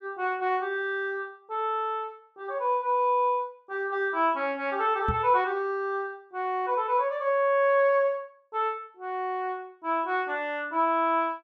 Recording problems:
knock on the microphone; at 5 s; peak 0 dB vs average level

